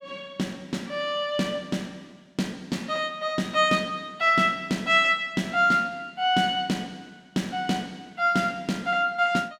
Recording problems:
none

